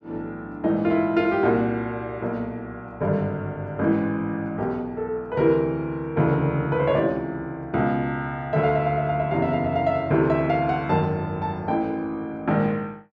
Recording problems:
none

